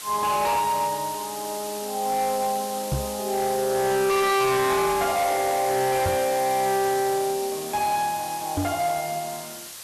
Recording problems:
distorted audio; hard clipping, signal-to-distortion ratio 7 dB
background hiss; slope +1 dB per octave, SNR 10 dB
microphone bump; at 3 s, at 6 s and at 8.5 s; peak +1 dB vs average level

